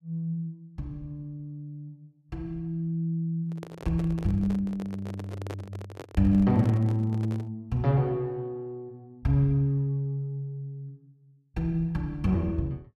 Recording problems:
microphone handling noise; from 3.5 to 7.5 s; peak -6 dB vs average level

